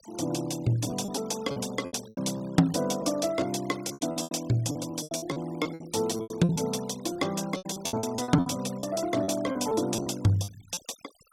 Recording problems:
noise reduction artefacts; signal-to-artefact ratio 18 dB
lost packets; 15% of the sound replaced, filled with repeated pitch periods

